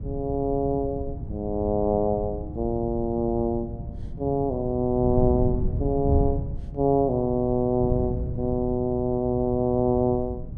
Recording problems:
wind on the microphone; below 130 Hz, SNR 7 dB

